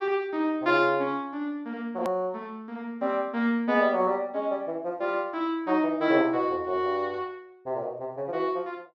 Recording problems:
hard cut with a click; at 2 s

